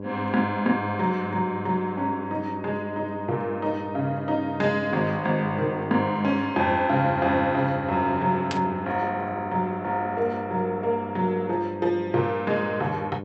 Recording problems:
treble cut off; nothing above 8 kHz
hum; 50 Hz, harmonics up to 1.1 kHz, SNR 11 dB
static burst; at 8.5 s; peak -2 dB vs average level

